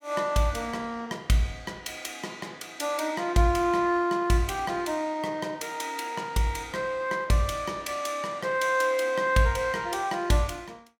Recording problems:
none

